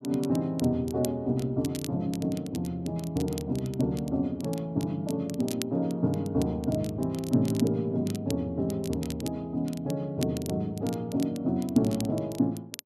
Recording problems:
crackling; vinyl, SNR 16 dB

